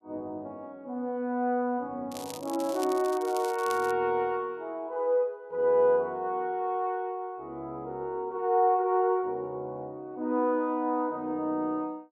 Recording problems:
crackle; from 2 to 4 s; loose cable, SNR 15 dB

